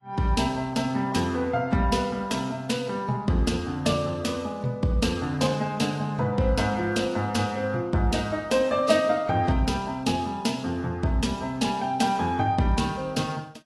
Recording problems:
lossy codec; AAC, log-spectral distance 3 dB, nothing above 11.6 kHz

